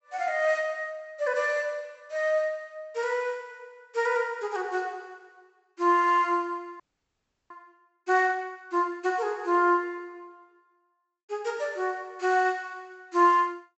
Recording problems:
treble cut off; nothing above 7.8 kHz
audio freezing; at 7 s for 0.5 s

